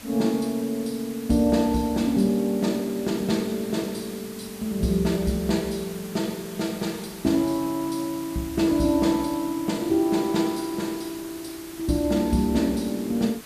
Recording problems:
hiss; slope -2 dB per octave, SNR 16 dB

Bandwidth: 14.5 kHz